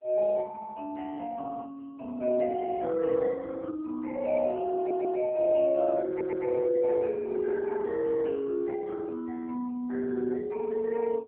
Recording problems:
phone line; 220 Hz to 2.8 kHz, AMR-NB
stutter; at 5 s and at 6 s

